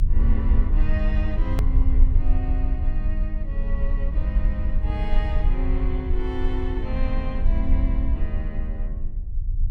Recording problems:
low-frequency rumble; below 56 Hz, strongest tone 28 Hz, SNR -8 dB
edit click; at 1.5 s

